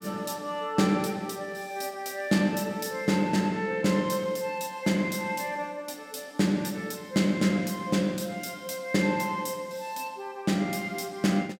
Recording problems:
none

